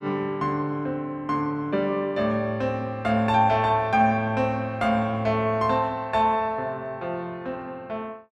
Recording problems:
none

